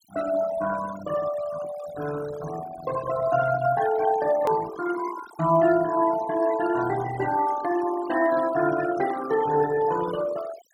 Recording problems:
denoising artefacts; signal-to-artefact ratio 14 dB
edit click; at 4.5 s

